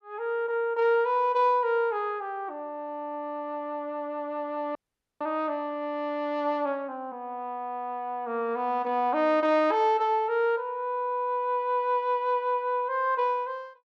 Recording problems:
audio freezing; at 5 s

